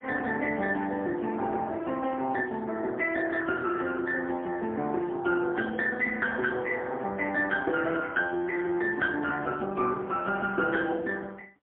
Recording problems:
phone line; 190 Hz to 3.2 kHz, AMR-NB, then MP3

